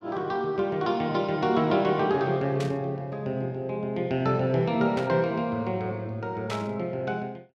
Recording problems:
burst of static; at 2.5 s, at 5 s and at 6.5 s; peak -5 dB vs average level

